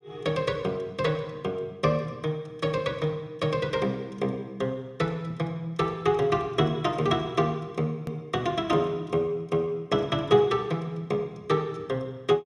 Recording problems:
hard cut with a click; at 8 s

